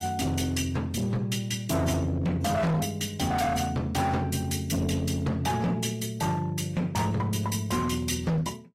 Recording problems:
lossy compression; AAC, log-spectral distance 3 dB, nothing above 14.3 kHz
distortion; hard clipping, signal-to-distortion ratio 7 dB

